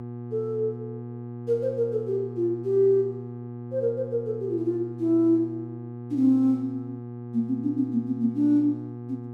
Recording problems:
hum; 60 Hz, harmonics up to 1.2 kHz, SNR 12 dB

